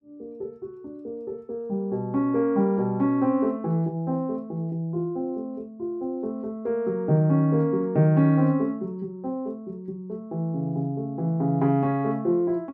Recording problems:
none

